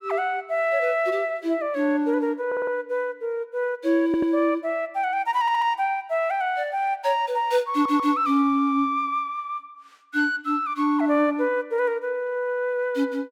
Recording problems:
audio stuttering; 4 times, first at 2.5 s

